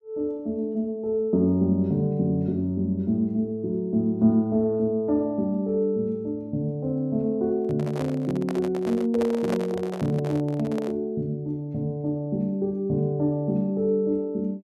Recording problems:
handling noise; from 7.5 to 11 s; peak -2 dB vs average level

